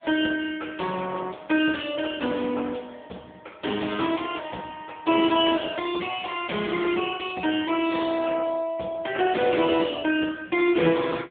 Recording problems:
telephone audio; 280 Hz to 3.4 kHz, AMR-NB

